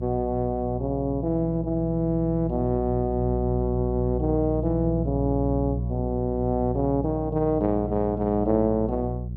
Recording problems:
electrical hum; 60 Hz, harmonics up to 420 Hz, SNR 5 dB

